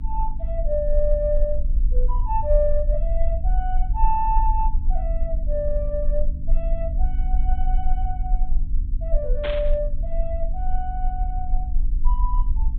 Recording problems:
treble missing; nothing above 4 kHz
hum; 50 Hz, harmonics up to 300 Hz, SNR 10 dB
rumble; below 40 Hz, strongest tone 18 Hz, SNR -3 dB
static burst; at 9.5 s; peak +1 dB vs average level

